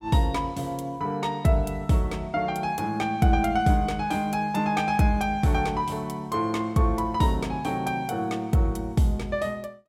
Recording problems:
none

